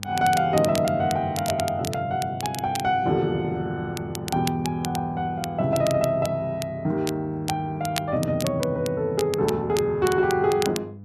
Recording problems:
hum; 50 Hz, harmonics up to 700 Hz, SNR 16 dB
crackling; vinyl, SNR 12 dB

